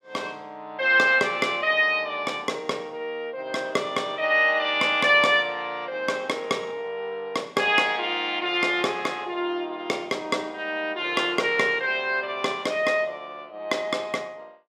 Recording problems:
none

